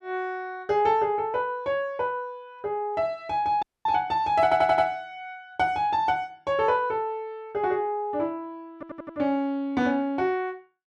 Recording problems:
audio cutting out; at 3.5 s
stutter; at 4.5 s and at 8.5 s

